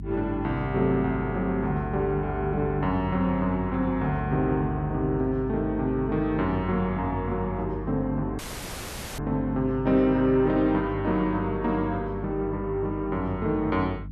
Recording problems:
mains hum; 50 Hz, harmonics up to 300 Hz, SNR 10 dB
dropout; at 8.5 s for 1 s

